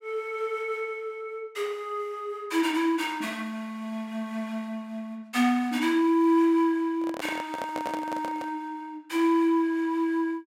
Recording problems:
microphone handling noise; from 7 to 8.5 s; peak -3 dB vs average level

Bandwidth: 16 kHz